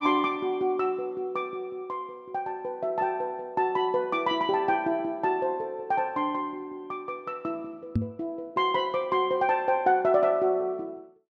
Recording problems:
microphone thump; at 8 s; peak +5 dB vs average level

